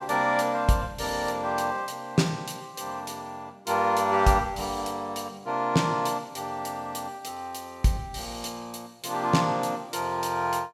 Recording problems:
none

